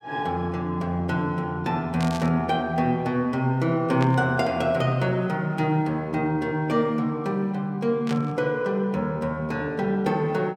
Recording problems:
static burst; at 2 s, at 4 s and at 8 s; peak -6 dB vs average level

